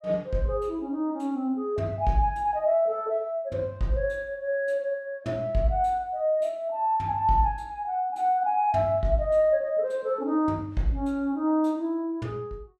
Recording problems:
none

